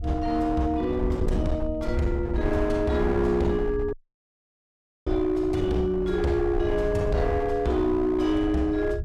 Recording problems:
distorted audio; hard clipping, signal-to-distortion ratio 11 dB
wind noise; below 96 Hz, SNR 8 dB
audio cutting out; at 4 s for 1 s

